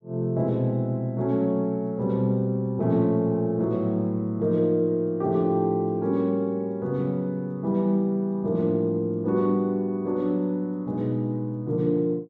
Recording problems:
none

